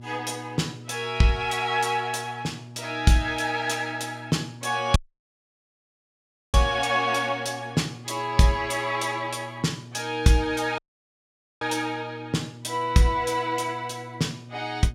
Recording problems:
hum; 60 Hz, harmonics up to 600 Hz, SNR 17 dB
dropout; at 5 s for 1.5 s and at 11 s for 1 s

